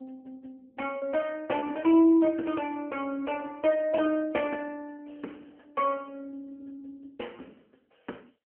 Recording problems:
phone line; 220 Hz to 3.2 kHz, AMR-NB
lost packets; 6% of the sound replaced, filled with repeated pitch periods

